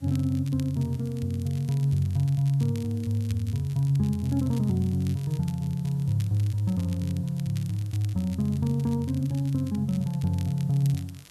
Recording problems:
hiss; SNR 30 dB
crackle; vinyl, SNR 23 dB

